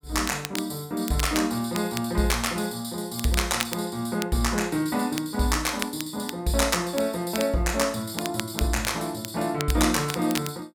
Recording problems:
crackle; vinyl, SNR 10 dB

